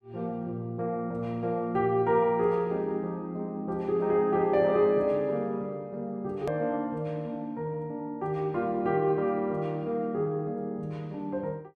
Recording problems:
edit click; at 6.5 s

